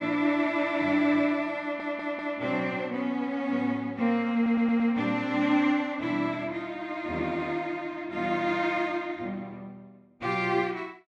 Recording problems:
stutter; at 1.5 s and at 4.5 s

